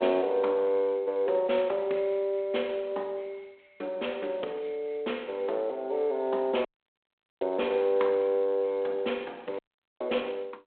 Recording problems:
telephone audio; 260 Hz to 3.5 kHz, G.726
dropout; at 6.5 s for 1 s and at 9.5 s

